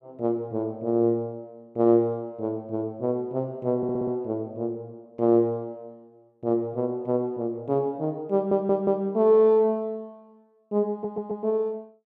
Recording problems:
stutter; at 4 s, at 8.5 s and at 11 s

